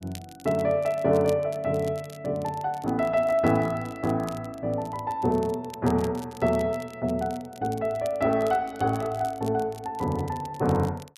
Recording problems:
crackle; vinyl, SNR 23 dB

